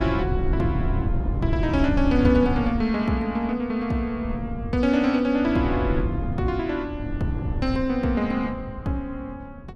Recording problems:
wind on the microphone; below 140 Hz, SNR 5 dB

